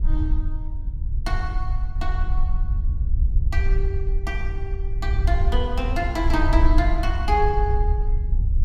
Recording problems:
low-frequency rumble; below 62 Hz, SNR -3 dB

